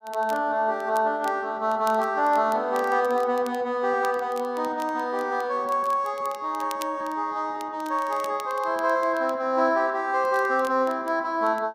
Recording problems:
crackling; vinyl, SNR 23 dB

